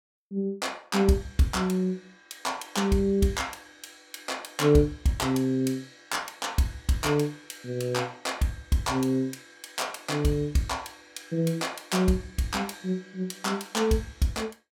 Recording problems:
none

